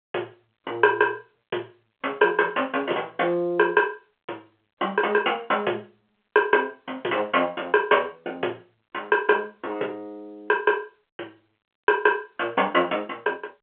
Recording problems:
phone line; 320 Hz to 3.4 kHz, G.711

